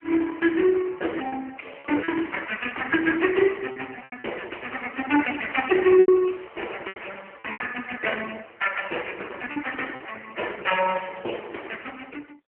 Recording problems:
telephone audio; 260 Hz to 3 kHz, AMR-NB
packet loss; 5% of the sound replaced, filled with repeated pitch periods

